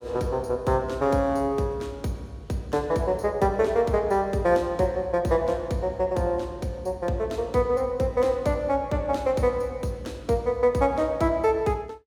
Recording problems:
none

